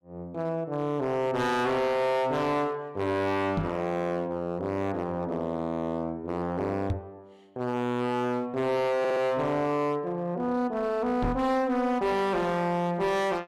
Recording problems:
distorted audio; hard clipping, uneven, signal-to-distortion ratio 6 dB
knock on the microphone; at 3.5 s, at 7 s and at 11 s; peak +2 dB vs average level
stutter; at 9 s

